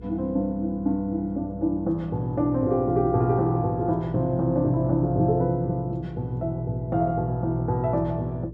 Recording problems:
electrical hum; 60 Hz, harmonics up to 480 Hz, SNR 15 dB

